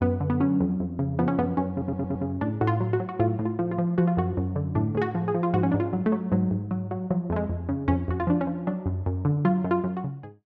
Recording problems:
audio stuttering; at 1.5 s

